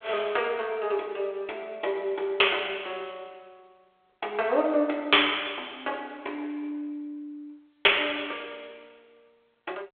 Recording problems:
telephone audio; 340 Hz to 3.5 kHz, G.726

